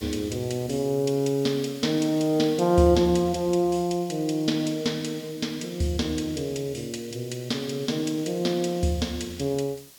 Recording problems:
hiss; slope +1 dB per octave, SNR 22 dB

